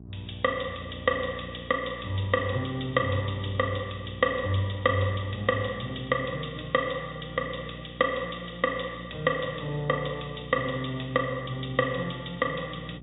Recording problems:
treble cut off; nothing above 4 kHz
hum; 60 Hz, harmonics up to 720 Hz, SNR 15 dB

